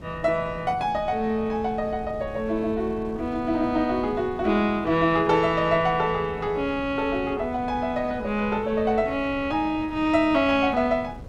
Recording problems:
wind on the microphone; below 270 Hz, SNR 17 dB

